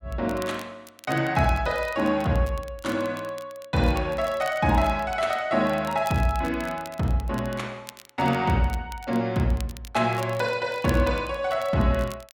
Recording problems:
crackling; vinyl, SNR 21 dB

